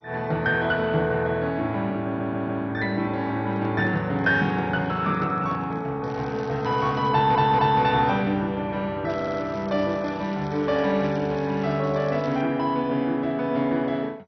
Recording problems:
codec artefacts; MP2, log-spectral distance 3 dB, nothing above 5.5 kHz
stutter; at 2 s, at 7 s and at 9 s
handling noise; from 3.5 to 6 s; peak -10 dB vs average level
crackling; from 6 to 7 s and from 9 to 12 s; loose cable, SNR 25 dB

